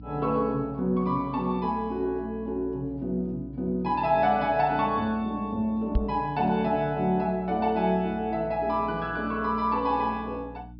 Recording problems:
low-pass filter; nothing above 5.4 kHz
electrical hum; 60 Hz, harmonics up to 300 Hz, SNR 18 dB
microphone thump; at 6 s; peak +5 dB vs average level

